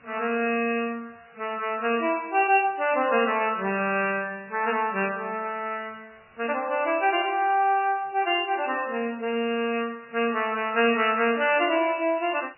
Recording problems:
codec artefacts; MP3, log-spectral distance 13 dB, nothing above 2.8 kHz
background hiss; SNR 30 dB

